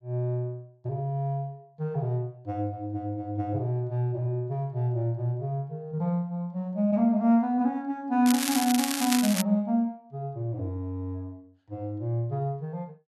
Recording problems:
crackle; from 8.5 to 9.5 s; loose cable, SNR 2 dB

